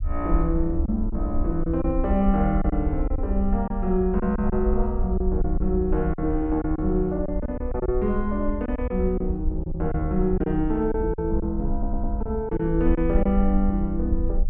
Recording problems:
low-frequency rumble; below 58 Hz, SNR 4 dB
lost packets; 6% of the sound replaced, filled with silence
stutter; at 12 s

